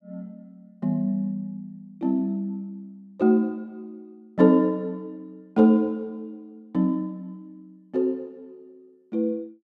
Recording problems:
none

